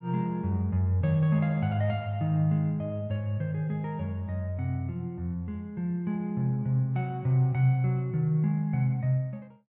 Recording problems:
none

